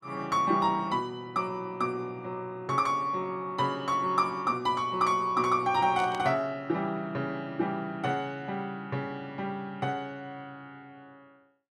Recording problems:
burst of static; at 6 s; peak -9 dB vs average level

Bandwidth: 14.5 kHz